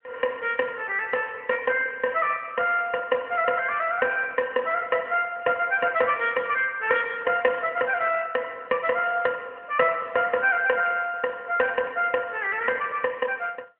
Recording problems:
phone line; 260 Hz to 3.2 kHz, AMR-NB

